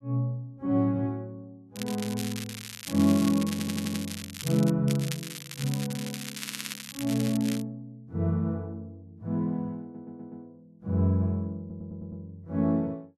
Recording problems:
crackle; from 2 to 4.5 s and from 5 to 7.5 s; loose cable, SNR 9 dB
stutter; 4 times, first at 3.5 s

